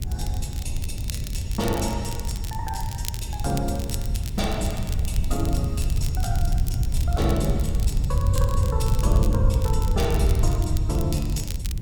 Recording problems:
hiss; SNR 25 dB
wind noise; below 96 Hz, SNR -4 dB
crackling; vinyl, SNR 9 dB

